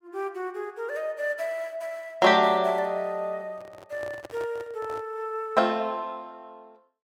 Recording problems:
handling noise; from 3.5 to 5 s; peak -9 dB vs average level

